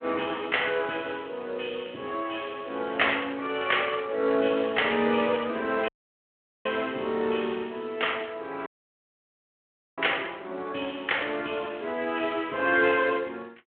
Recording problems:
phone line; 260 Hz to 3.4 kHz, Speex
dropout; at 6 s for 1 s and at 8.5 s for 1.5 s

